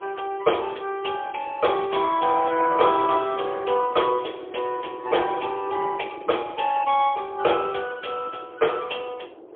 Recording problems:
phone line; 280 Hz to 3.4 kHz, AMR-NB, then MP3
wind noise; below 530 Hz, SNR 19 dB

